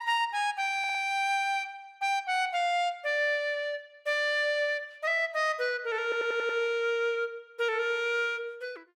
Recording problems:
stutter; at 1 s and at 6 s

